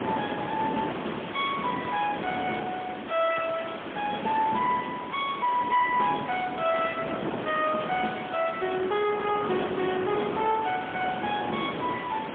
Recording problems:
telephone audio; 150 Hz to 3.5 kHz, AMR-NB, then MP3
distorted audio; soft clipping, signal-to-distortion ratio 12 dB
hiss; SNR 10 dB
wind on the microphone; below 900 Hz, SNR 7 dB

